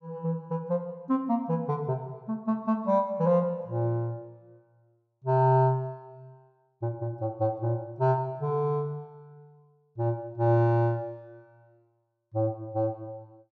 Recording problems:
none

